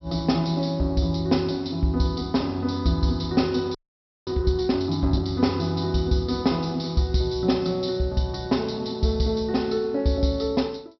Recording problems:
treble cut off; nothing above 5.7 kHz
audio freezing; at 4 s for 0.5 s

